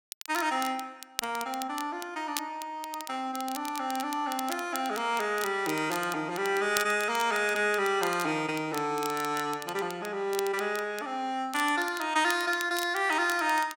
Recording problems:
crackle; vinyl, SNR 12 dB

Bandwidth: 16.5 kHz